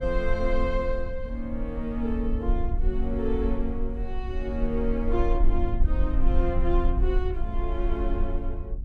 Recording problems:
rumble; below 48 Hz, SNR -1 dB

